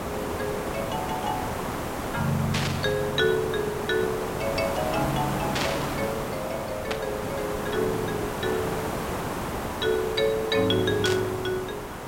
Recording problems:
hiss; SNR 3 dB
static burst; 4 times, first at 2.5 s; peak +4 dB vs average level

